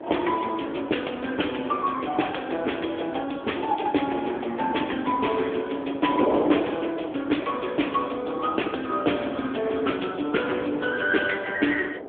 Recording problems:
phone line; 240 Hz to 3.4 kHz, AMR-NB
wind on the microphone; below 650 Hz, SNR 8 dB

